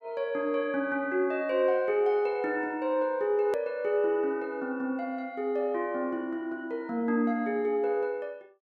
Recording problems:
edit click; at 3.5 s

